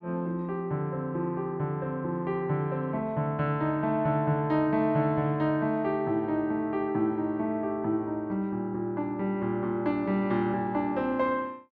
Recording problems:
none

